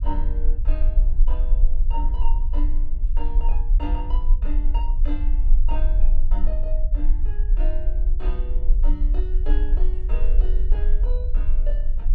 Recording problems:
low-frequency rumble; below 38 Hz, strongest tone 18 Hz, SNR -14 dB

